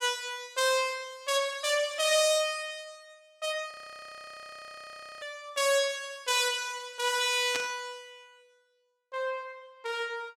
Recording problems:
frozen audio; at 3.5 s for 1.5 s
burst of static; at 7.5 s; peak -1 dB vs average level

